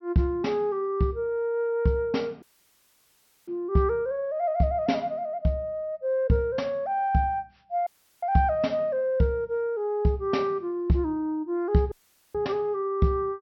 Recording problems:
treble cut off; nothing above 5.8 kHz
audio cutting out; at 2.5 s for 1 s, at 8 s and at 12 s

